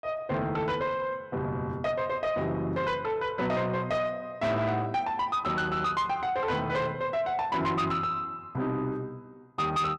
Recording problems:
distortion; soft clipping, signal-to-distortion ratio 11 dB

